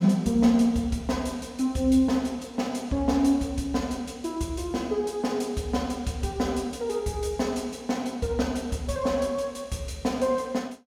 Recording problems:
none

